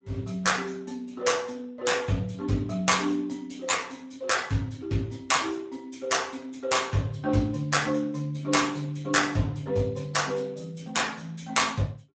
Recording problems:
codec artefacts; MP3, then Speex, log-spectral distance 4 dB, nothing above 7.8 kHz

